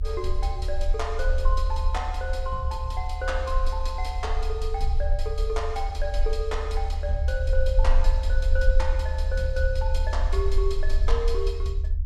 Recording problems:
low-frequency rumble; below 62 Hz, strongest tone 26 Hz, SNR -3 dB

